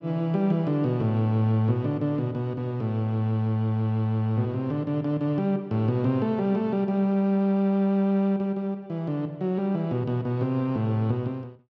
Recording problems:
none

